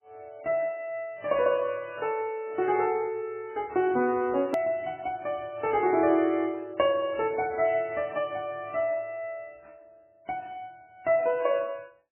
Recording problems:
lossy codec; MP3, log-spectral distance 2 dB, nothing above 2.8 kHz
click at an edit; at 4.5 s

